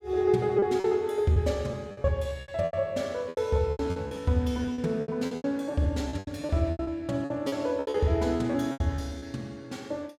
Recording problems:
packet loss; 16% of the sound replaced, filled with repeated pitch periods

